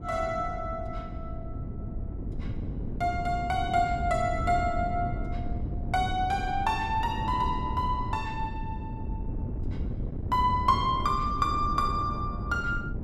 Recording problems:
wind noise; below 170 Hz, SNR 6 dB

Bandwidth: 14.5 kHz